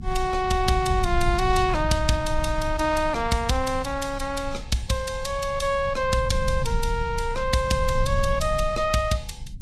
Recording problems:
lossy codec; Vorbis, log-spectral distance 3 dB, nothing above 13.5 kHz
low-frequency rumble; below 84 Hz, SNR 7 dB

